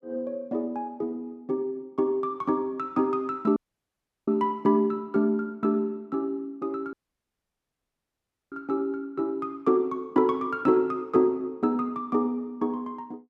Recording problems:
dropout; at 3.5 s for 0.5 s and at 7 s for 1.5 s

